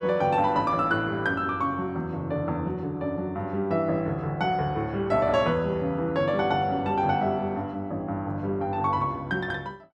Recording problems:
none

